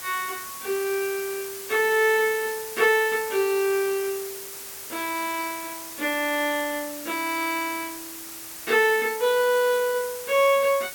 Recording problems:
background hiss; slope 0 dB per octave, SNR 11 dB

